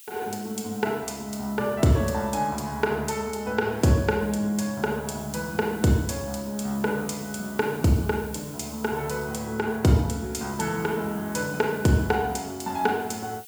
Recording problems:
hiss; SNR 19 dB

